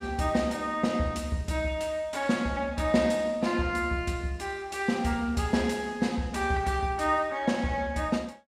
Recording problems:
none

